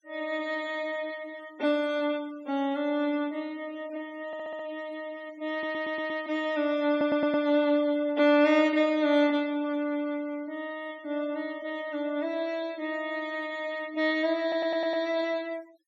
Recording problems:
noise reduction artefacts; signal-to-artefact ratio 24 dB
audio stuttering; 4 times, first at 4.5 s

